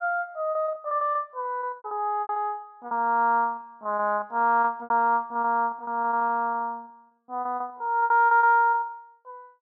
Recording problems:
lost packets; 17% of the sound replaced, filled with repeated pitch periods

